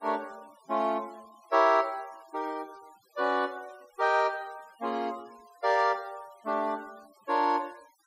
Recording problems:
denoising artefacts; signal-to-artefact ratio 27 dB

